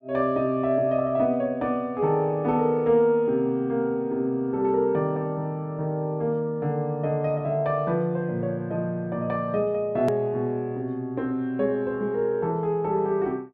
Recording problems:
edit click; at 10 s

